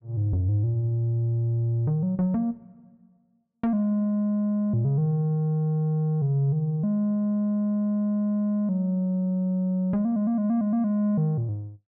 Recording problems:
none

